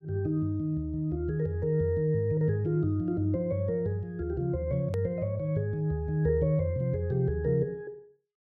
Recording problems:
hard cut with a click; at 5 s

